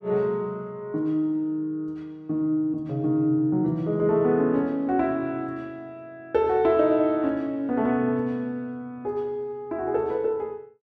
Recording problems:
none

